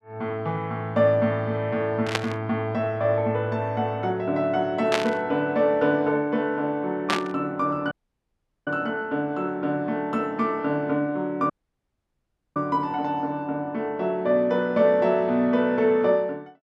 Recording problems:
burst of static; at 2 s, at 5 s and at 7 s; peak +4 dB vs average level
dropout; at 8 s for 1 s and at 12 s for 1 s

